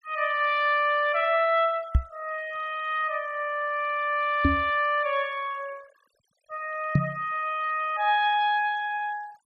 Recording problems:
noise reduction artefacts; signal-to-artefact ratio 25 dB
microphone thump; at 2 s, at 4.5 s and at 7 s; peak +7 dB vs average level

